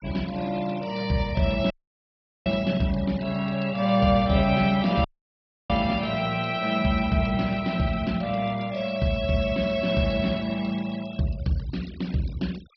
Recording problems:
treble cut off; nothing above 5.5 kHz
noise reduction artefacts; signal-to-artefact ratio 21 dB
audio cutting out; at 1.5 s for 1 s and at 5 s for 0.5 s

